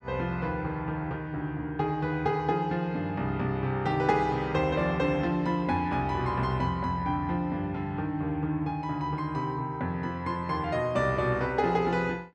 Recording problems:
none

